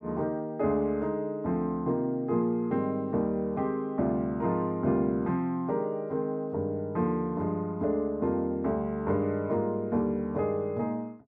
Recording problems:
none

